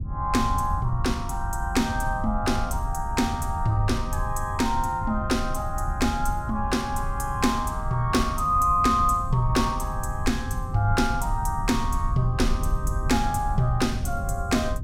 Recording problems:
low-frequency rumble; below 92 Hz, SNR 5 dB

